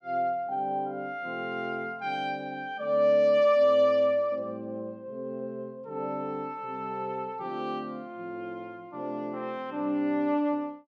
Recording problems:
none

